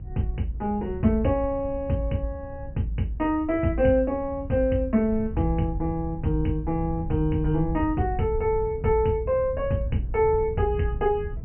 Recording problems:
treble missing; nothing above 3.1 kHz
rumble; below 100 Hz, SNR 11 dB

